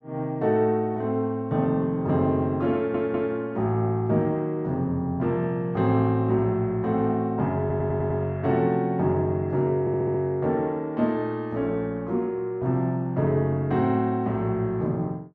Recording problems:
stutter; at 3 s, at 7.5 s and at 10 s

